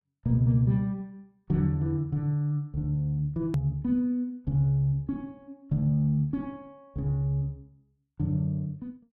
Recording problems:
hard cut with a click; at 3.5 s

